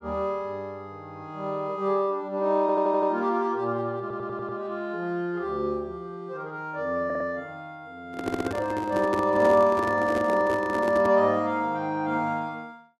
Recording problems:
audio stuttering; 4 times, first at 2.5 s
handling noise; from 8 to 11 s; peak 0 dB vs average level

